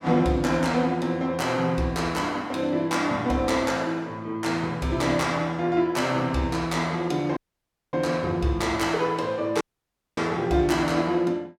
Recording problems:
audio cutting out; at 7.5 s for 0.5 s and at 9.5 s for 0.5 s

